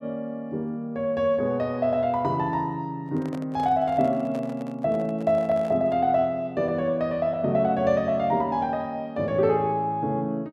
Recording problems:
handling noise; from 3 to 6 s; peak -10 dB vs average level

